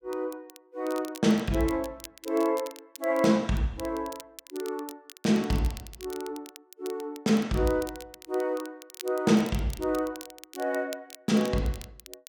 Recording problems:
crackling; vinyl, SNR 18 dB

